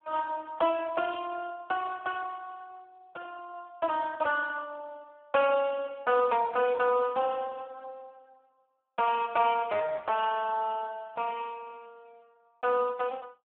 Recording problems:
phone line; 320 Hz to 2.1 kHz, Speex

